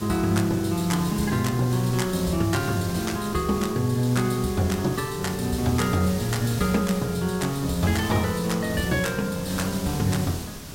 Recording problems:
hiss; SNR 10 dB

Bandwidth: 16 kHz